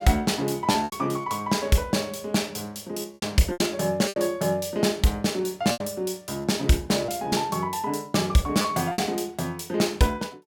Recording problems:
packet loss; 6% of the sound replaced, filled with repeated pitch periods

